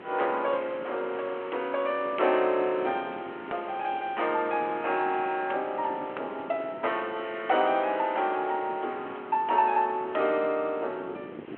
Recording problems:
phone line; 300 Hz to 3.3 kHz, G.726
hiss; SNR 19 dB
wind on the microphone; below 470 Hz, SNR 18 dB

